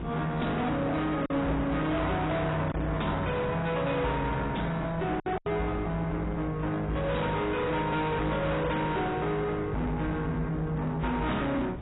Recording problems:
lossy compression; AAC, log-spectral distance 3 dB, nothing above 3.8 kHz
distorted audio; soft clipping, signal-to-distortion ratio 7 dB
hum; 60 Hz, harmonics up to 360 Hz, SNR 15 dB
wind on the microphone; below 650 Hz, SNR 14 dB
lost packets; 1.7% of the sound replaced, filled with silence

